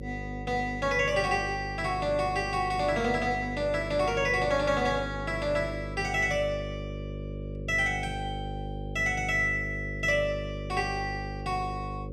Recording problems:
electrical hum; 50 Hz, harmonics up to 550 Hz, SNR 9 dB

